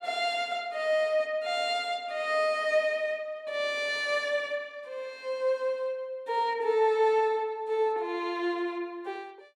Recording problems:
none

